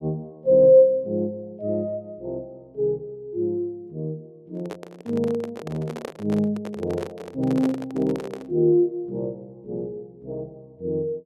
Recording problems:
microphone handling noise; from 4.5 to 8.5 s; peak -4 dB vs average level

